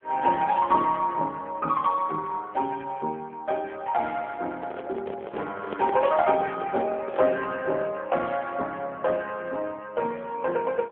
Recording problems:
phone line; 240 Hz to 2.8 kHz, AMR-NB
microphone handling noise; from 4.5 to 7.5 s; peak -3 dB vs average level

